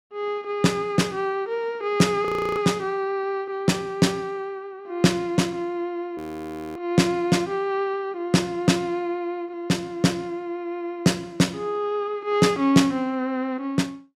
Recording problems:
frozen audio; at 2.5 s and at 6 s for 0.5 s

